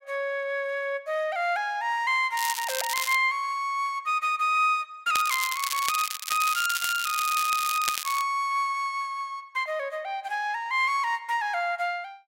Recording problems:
crackle; at 2.5 s and from 5 to 8 s; loose cable, SNR 4 dB

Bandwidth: 16 kHz